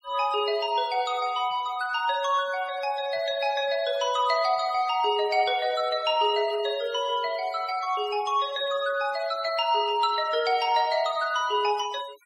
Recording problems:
denoising artefacts; signal-to-artefact ratio 20 dB

